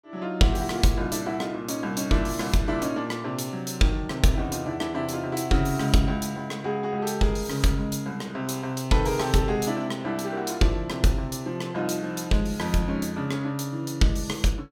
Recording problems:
none

